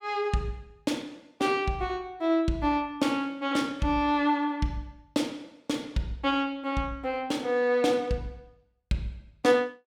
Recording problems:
none

